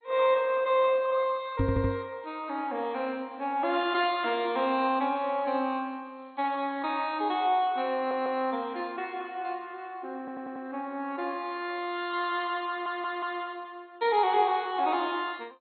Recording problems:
codec artefacts; MP2, log-spectral distance 3 dB, nothing above 4 kHz
microphone bump; at 1.5 s; peak +4 dB vs average level
stutter; 4 times, first at 1.5 s

